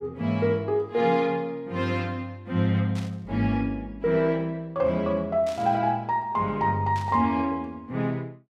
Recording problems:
static burst; at 3 s, at 5.5 s and at 7 s; peak -11 dB vs average level

